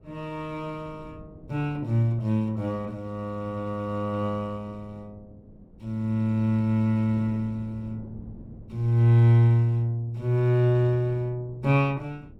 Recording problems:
wind noise; below 250 Hz, SNR 24 dB

